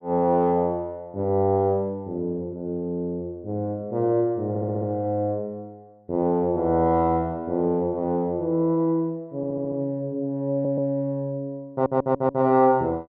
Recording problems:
audio stuttering; 4 times, first at 4.5 s

